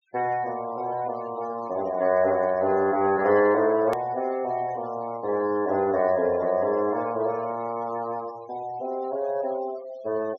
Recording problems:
treble missing; nothing above 6.6 kHz
noise reduction artefacts; signal-to-artefact ratio 22 dB
click at an edit; at 4 s

